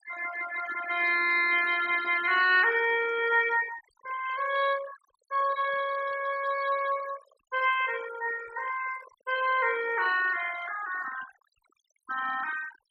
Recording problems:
noise reduction artefacts; signal-to-artefact ratio 14 dB

